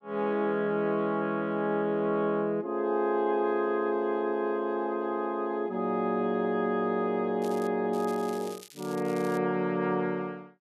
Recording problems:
crackle; at 7.5 s and from 8 to 9.5 s; loose cable, SNR 20 dB

